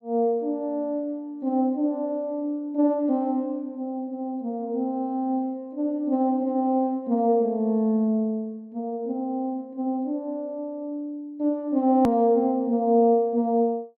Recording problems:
edit click; at 12 s

